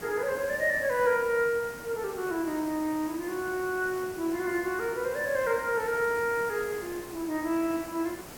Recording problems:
hiss; slope -5 dB per octave, SNR 14 dB

